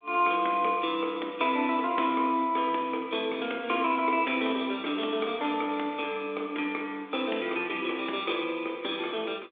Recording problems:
phone line; 240 Hz to 3.6 kHz, G.726

